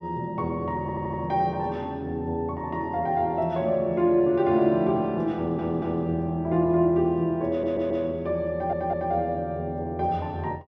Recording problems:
stutter; 4 times, first at 1 s

